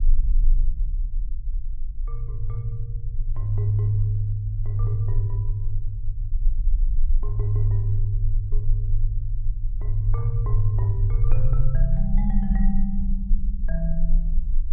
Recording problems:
rumble; below 38 Hz, strongest tone 18 Hz, SNR 1 dB

